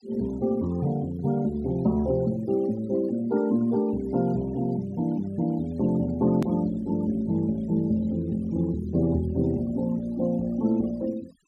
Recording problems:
denoising artefacts; signal-to-artefact ratio 23 dB
click at an edit; at 6.5 s

